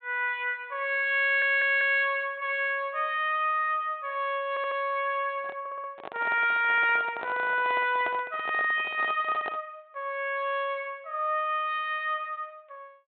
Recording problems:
treble missing; nothing above 4 kHz
stutter; at 1 s, at 4.5 s and at 5.5 s
handling noise; from 5.5 to 9.5 s; peak -5 dB vs average level

